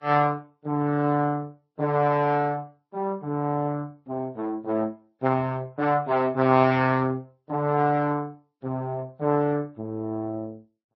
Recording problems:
lossy codec; Vorbis, then MP3, log-spectral distance 2 dB, nothing above 5.7 kHz

